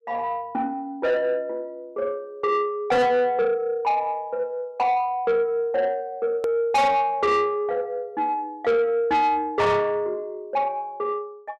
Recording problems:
distorted audio; soft clipping, signal-to-distortion ratio 7 dB
edit click; at 6.5 s

